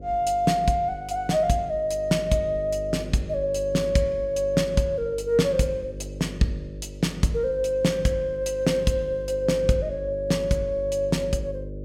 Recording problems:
electrical hum; 50 Hz, harmonics up to 600 Hz, SNR 14 dB

